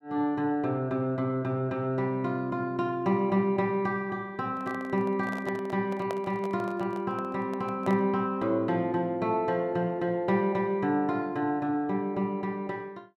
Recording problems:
microphone handling noise; from 4.5 to 8 s; peak -3 dB vs average level

